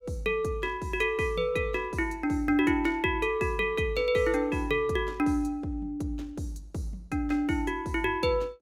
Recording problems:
none

